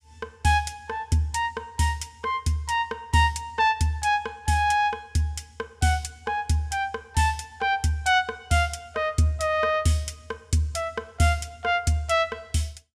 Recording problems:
none

